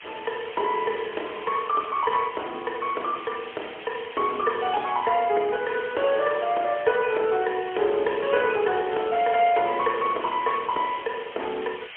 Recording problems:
phone line; 320 Hz to 3.4 kHz, AMR-NB, then MP3
hiss; SNR 14 dB

